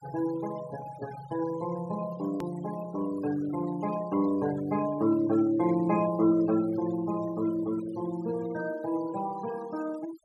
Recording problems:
noise reduction artefacts; signal-to-artefact ratio 17 dB
hard cut with a click; at 2.5 s

